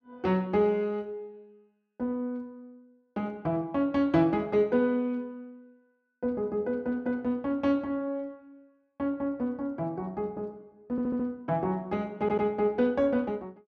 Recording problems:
audio stuttering; at 11 s and at 12 s

